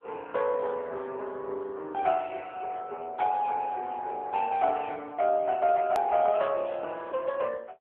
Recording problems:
telephone audio; 300 Hz to 3.3 kHz, AMR-NB
hard cut with a click; at 6 s

